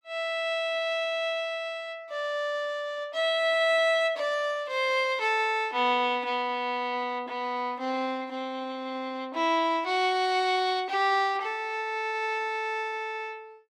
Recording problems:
none

